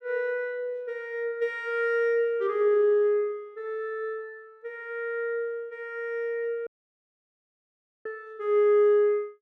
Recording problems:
audio cutting out; at 6.5 s for 1.5 s

